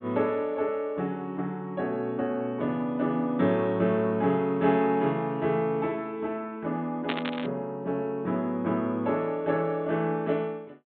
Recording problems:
low-pass filter; nothing above 4 kHz
burst of static; at 7 s; peak +1 dB vs average level

